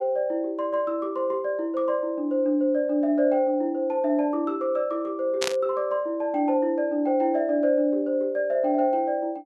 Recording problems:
static burst; at 5.5 s; peak +2 dB vs average level

